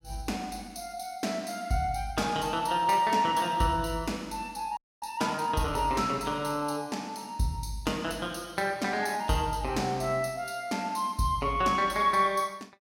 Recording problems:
frozen audio; at 5 s

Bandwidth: 16.5 kHz